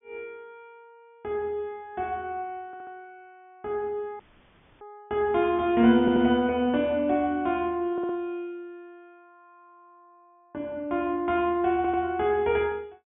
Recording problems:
treble cut off; nothing above 3.5 kHz
stutter; 4 times, first at 2.5 s
audio cutting out; at 4 s for 0.5 s

